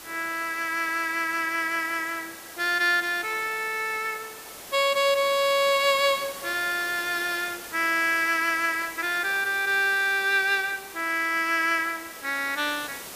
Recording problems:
hiss; slope -2 dB per octave, SNR 15 dB

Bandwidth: 15 kHz